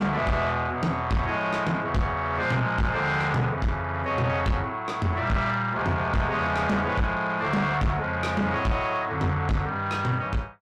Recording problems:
distortion; soft clipping, signal-to-distortion ratio 5 dB

